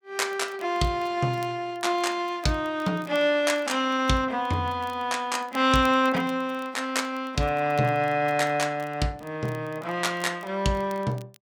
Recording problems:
crackling; vinyl, SNR 27 dB

